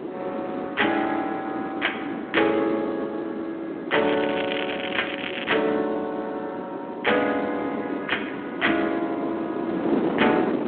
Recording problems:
telephone audio; 220 Hz to 3.4 kHz, Speex
wind on the microphone; below 510 Hz, SNR 5 dB
crackle; from 4 to 5.5 s; loose cable, SNR 5 dB

